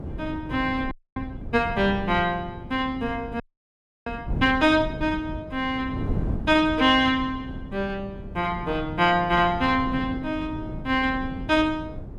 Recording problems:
wind on the microphone; below 220 Hz, SNR 11 dB
audio freezing; at 1 s and at 3.5 s for 0.5 s

